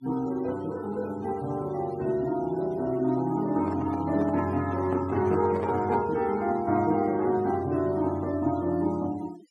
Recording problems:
denoising artefacts; signal-to-artefact ratio 21 dB
handling noise; from 3.5 to 6 s; peak -5 dB vs average level

